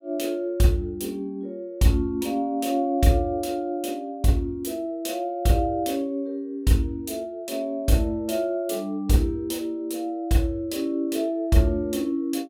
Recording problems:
none

